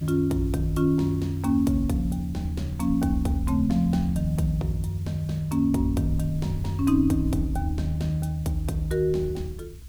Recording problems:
background hiss; SNR 28 dB
rumble; below 94 Hz, SNR 14 dB

